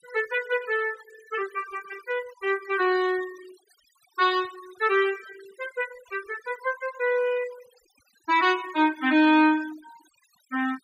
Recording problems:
noise reduction artefacts; signal-to-artefact ratio 19 dB

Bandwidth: 15.5 kHz